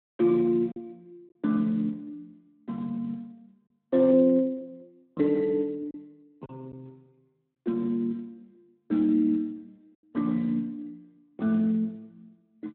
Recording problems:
telephone audio; 190 Hz to 2.3 kHz, Speex
lost packets; 1.3% of the sound replaced, filled with silence

